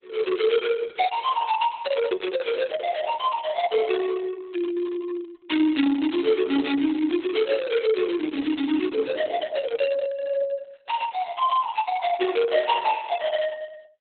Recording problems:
codec artefacts; Opus, log-spectral distance 4 dB, nothing above 4 kHz

